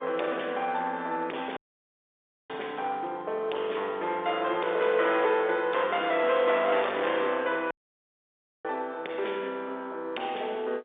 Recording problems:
telephone audio; 300 Hz to 3.7 kHz, G.711
distorted audio; hard clipping, uneven, signal-to-distortion ratio 12 dB
dropout; at 1.5 s for 1 s and at 7.5 s for 1 s

